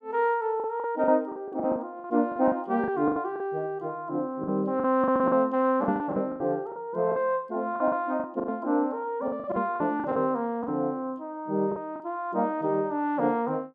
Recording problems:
lost packets; 12% of the sound replaced, filled with the last packet

